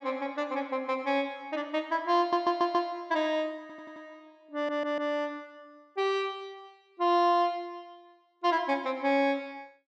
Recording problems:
audio stuttering; at 2 s, at 3.5 s and at 4.5 s

